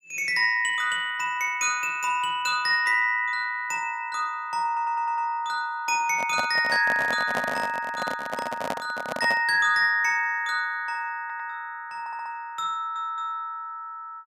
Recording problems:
stutter; 4 times, first at 4.5 s
handling noise; from 6 to 9.5 s; peak 0 dB vs average level

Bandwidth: 15.5 kHz